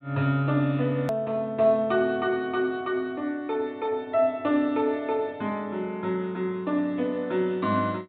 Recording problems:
treble cut off; nothing above 4 kHz
click at an edit; at 1 s

